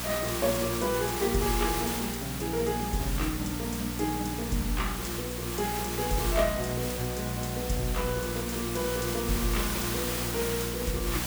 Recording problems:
electrical hum; 60 Hz, harmonics up to 780 Hz, SNR 6 dB
background hiss; slope -1 dB per octave, SNR 2 dB

